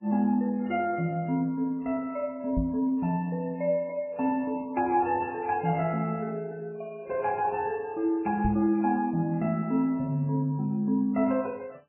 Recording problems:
codec artefacts; MP3, log-spectral distance 2 dB, nothing above 2.7 kHz
knock on the microphone; at 2.5 s and at 8.5 s; peak +1 dB vs average level

